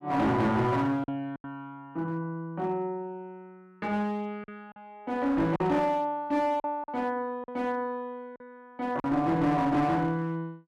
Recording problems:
distorted audio; hard clipping, uneven, signal-to-distortion ratio 9 dB
lost packets; 4% of the sound replaced, filled with silence

